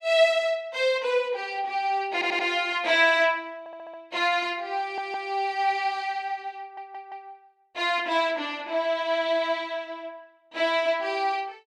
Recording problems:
stutter; 4 times, first at 2 s

